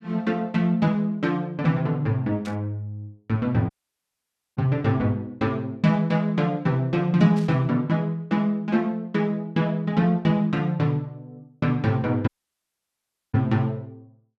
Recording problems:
burst of static; at 2.5 s and at 7.5 s; peak -13 dB vs average level
dropout; at 3.5 s for 1 s and at 12 s for 1 s

